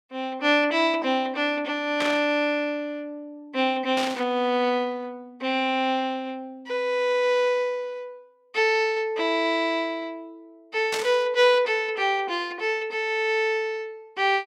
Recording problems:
burst of static; at 2 s, at 4 s and at 11 s; peak -1 dB vs average level

